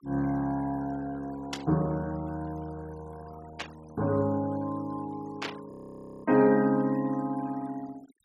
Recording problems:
noise reduction artefacts; signal-to-artefact ratio 22 dB
static burst; at 1.5 s, at 3.5 s and at 5.5 s; peak -1 dB vs average level
frozen audio; at 5.5 s for 0.5 s

